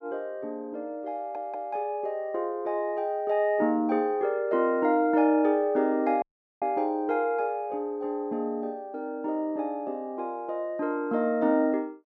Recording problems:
audio stuttering; at 1 s
audio cutting out; at 6 s

